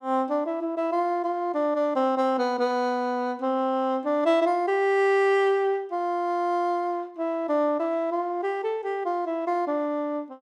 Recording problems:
none

